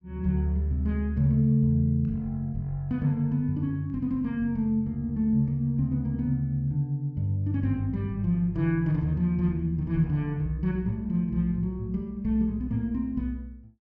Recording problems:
none

